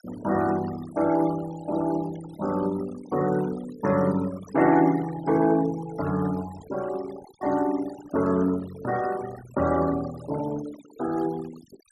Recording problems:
noise reduction artefacts; signal-to-artefact ratio 17 dB

